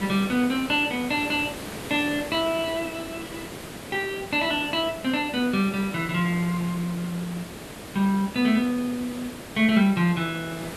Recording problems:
hiss; slope -5 dB per octave, SNR 12 dB

